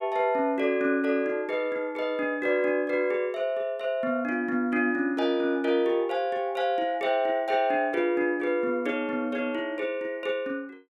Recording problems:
none

